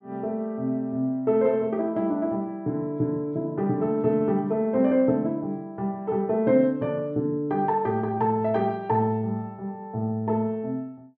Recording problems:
none

